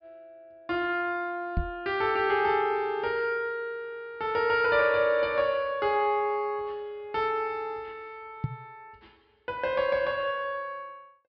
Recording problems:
treble missing; nothing above 5.5 kHz
microphone bump; at 1.5 s and at 8.5 s; peak +2 dB vs average level

